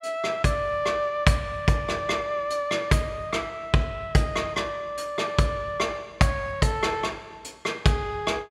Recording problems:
none

